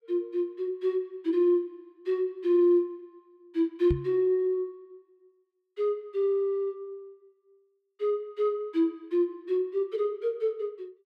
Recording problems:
microphone thump; at 4 s; peak +2 dB vs average level

